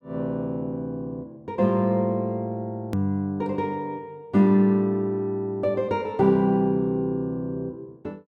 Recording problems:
edit click; at 3 s

